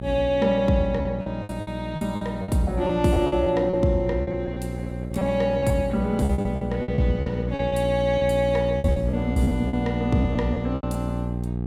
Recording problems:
electrical hum; 60 Hz, harmonics up to 780 Hz, SNR 6 dB
lost packets; 14% of the sound replaced, filled with repeated pitch periods

